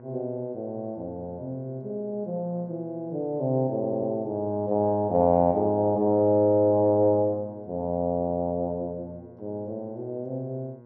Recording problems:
treble missing; nothing above 6.2 kHz
mains hum; 60 Hz, harmonics up to 1.1 kHz, SNR 24 dB
stutter; at 4 s

